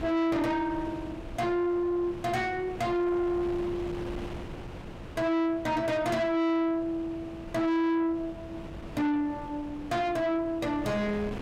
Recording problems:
distorted audio; soft clipping, signal-to-distortion ratio 6 dB
wind on the microphone; below 650 Hz, SNR 13 dB

